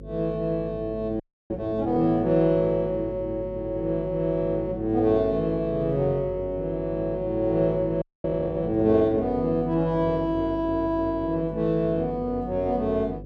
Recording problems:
hum; 50 Hz, harmonics up to 550 Hz, SNR 15 dB
frozen audio; at 1 s and at 8 s

